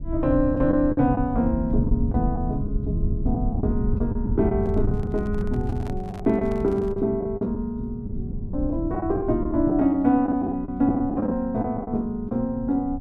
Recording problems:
rumble; below 110 Hz, SNR 6 dB
lost packets; 8% of the sound replaced, filled with the last packet
handling noise; from 4.5 to 7 s; peak -13 dB vs average level

